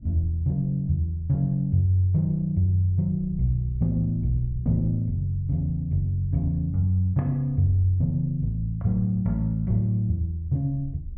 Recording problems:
wind on the microphone; below 82 Hz, SNR 19 dB

